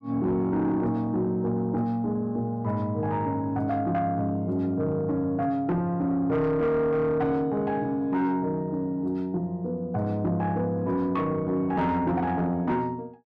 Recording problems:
distortion; soft clipping, signal-to-distortion ratio 12 dB

